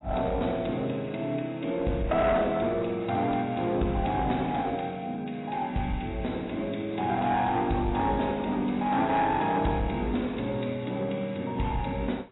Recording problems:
lossy compression; AAC, log-spectral distance 4 dB, nothing above 3.9 kHz
distortion; hard clipping, uneven, signal-to-distortion ratio 11 dB

